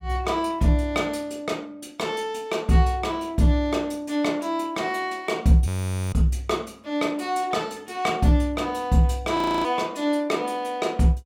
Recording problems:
audio freezing; at 5.5 s and at 9.5 s

